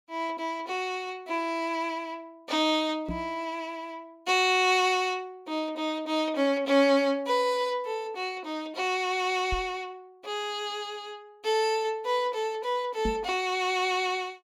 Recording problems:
microphone bump; at 3 s, at 9.5 s and at 13 s; peak -1 dB vs average level

